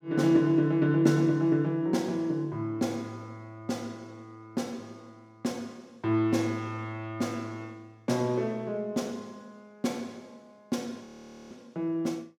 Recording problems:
audio freezing; at 11 s

